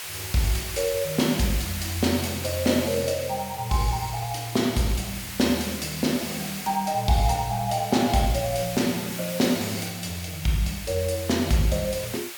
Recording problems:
background hiss; SNR 9 dB

